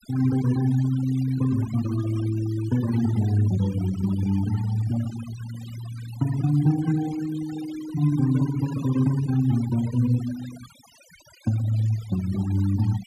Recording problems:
denoising artefacts; signal-to-artefact ratio 17 dB

